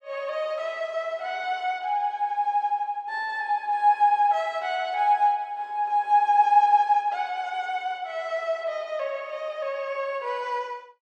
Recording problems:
none

